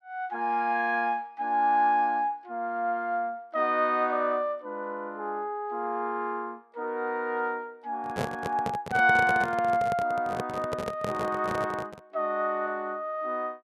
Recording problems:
handling noise; from 8 to 12 s; peak +1 dB vs average level

